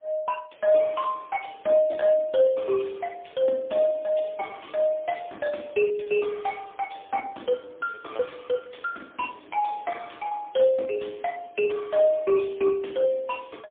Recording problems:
telephone audio; 240 Hz to 3.4 kHz, AMR-NB, then MP3
lost packets; 7% of the sound replaced, filled with repeated pitch periods

